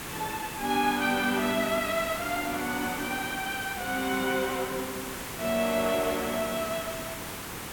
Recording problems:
hiss; slope -3 dB per octave, SNR 7 dB

